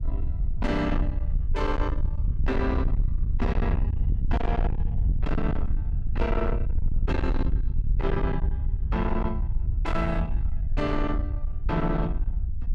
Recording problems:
distorted audio; soft clipping, signal-to-distortion ratio 7 dB
low-frequency rumble; below 72 Hz, SNR -1 dB

